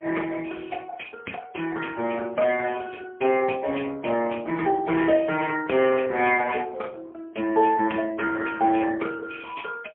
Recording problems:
phone line; 220 Hz to 3.2 kHz, AMR-NB, then MP3

